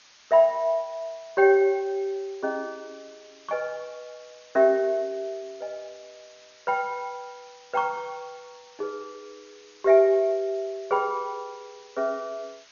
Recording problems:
codec artefacts; MP2, log-spectral distance 10 dB, nothing above 5.8 kHz
hiss; slope +2 dB per octave, SNR 26 dB

